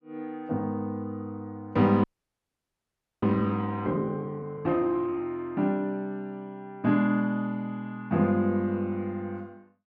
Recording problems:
frozen audio; at 2 s for 1 s

